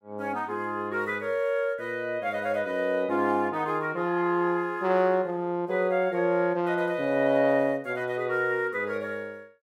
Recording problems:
none

